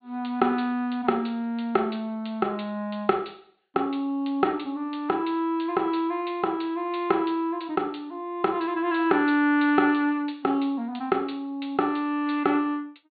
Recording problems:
treble missing; nothing above 4.4 kHz

